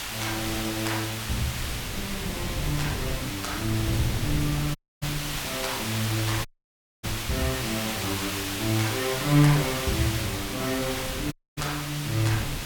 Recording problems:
hiss; SNR 3 dB
wind noise; below 210 Hz, SNR 10 dB
dropout; at 5 s, at 6.5 s for 0.5 s and at 11 s

